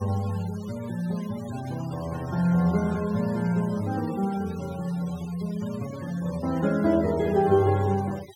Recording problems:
denoising artefacts; signal-to-artefact ratio 19 dB

